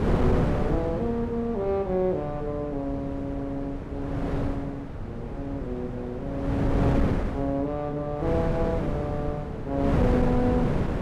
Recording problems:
wind on the microphone; below 400 Hz, SNR 0 dB

